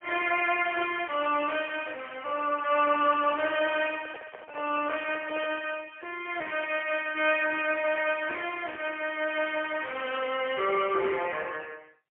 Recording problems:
phone line; 320 Hz to 3.2 kHz, AMR-NB, then MP3
microphone handling noise; from 3.5 to 5.5 s; peak -11 dB vs average level

